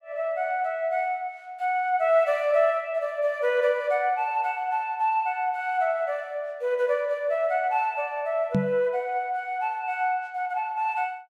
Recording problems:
knock on the microphone; at 8.5 s; peak +5 dB vs average level

